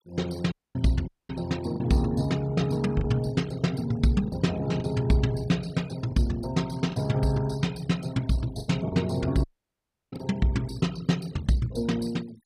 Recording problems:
denoising artefacts; signal-to-artefact ratio 20 dB
packet loss; 5% of the sound replaced, filled with the last packet
dropout; at 0.5 s, at 1 s and at 9.5 s for 0.5 s

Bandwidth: 15 kHz